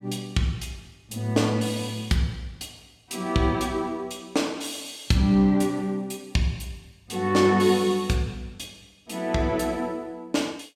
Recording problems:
none

